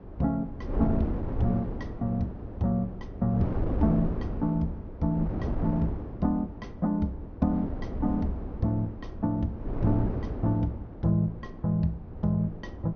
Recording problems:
low-pass filter; nothing above 6.4 kHz
wind noise; below 290 Hz, SNR 6 dB

